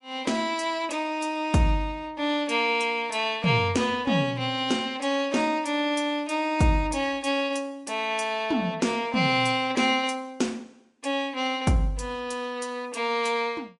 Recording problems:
lossy compression; MP3, log-spectral distance 2 dB, nothing above 11 kHz

